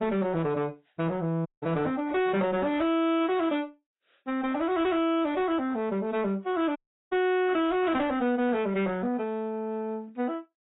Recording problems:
lossy codec; AAC, log-spectral distance 2 dB, nothing above 3.7 kHz
distortion; hard clipping, uneven, signal-to-distortion ratio 10 dB
audio cutting out; at 1.5 s and at 7 s

